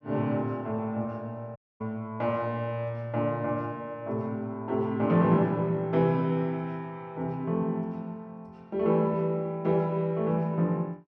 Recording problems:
audio cutting out; at 1.5 s

